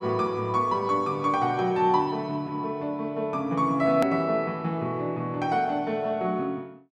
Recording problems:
edit click; at 4 s

